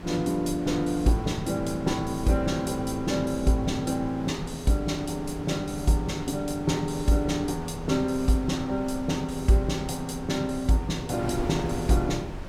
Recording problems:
wind noise; below 410 Hz, SNR 12 dB

